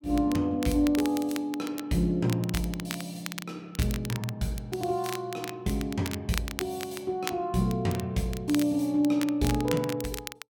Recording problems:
crackling; vinyl, SNR 11 dB

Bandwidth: 17 kHz